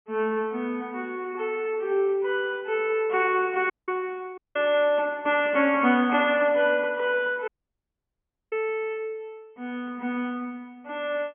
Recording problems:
treble missing; nothing above 3.2 kHz
dropout; at 3.5 s, at 4.5 s and at 7.5 s for 1 s

